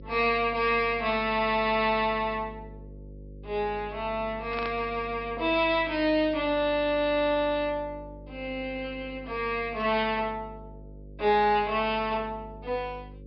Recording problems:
low-pass filter; nothing above 5.4 kHz
hum; 50 Hz, harmonics up to 550 Hz, SNR 18 dB
burst of static; at 4.5 s; peak -6 dB vs average level

